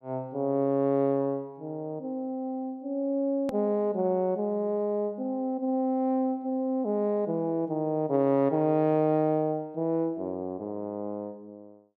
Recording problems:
click at an edit; at 3.5 s

